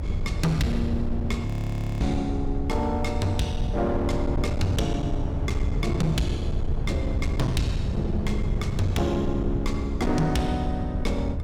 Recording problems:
distortion; hard clipping, signal-to-distortion ratio 11 dB
rumble; below 78 Hz, strongest tone 22 Hz, SNR 6 dB
wind on the microphone; below 150 Hz, SNR 3 dB
audio freezing; at 1.5 s for 0.5 s

